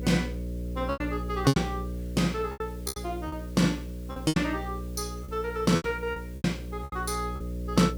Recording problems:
hum; 60 Hz, harmonics up to 600 Hz, SNR 7 dB
hiss; slope +1 dB per octave, SNR 25 dB
lost packets; 13% of the sound replaced, filled with repeated pitch periods

